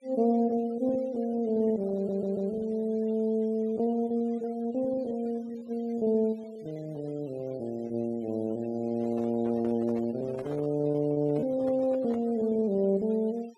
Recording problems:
denoising artefacts; signal-to-artefact ratio 28 dB
lost packets; 14% of the sound replaced, filled with repeated pitch periods
stutter; at 2 s
microphone handling noise; from 9 to 12 s; peak -9 dB vs average level

